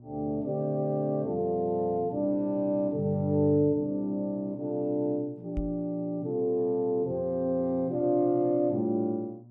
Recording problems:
electrical hum; 60 Hz, harmonics up to 600 Hz, SNR 21 dB
microphone thump; at 5.5 s; peak -2 dB vs average level

